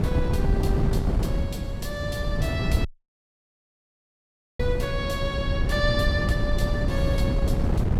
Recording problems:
electrical hum; 50 Hz, harmonics up to 500 Hz, SNR 17 dB
wind on the microphone; below 170 Hz, SNR -3 dB
audio cutting out; at 3 s for 1.5 s

